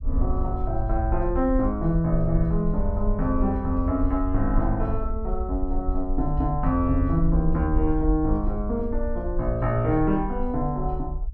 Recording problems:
rumble; below 54 Hz, SNR 4 dB

